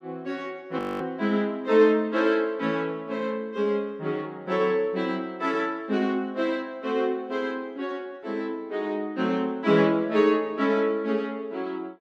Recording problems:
frozen audio; at 1 s

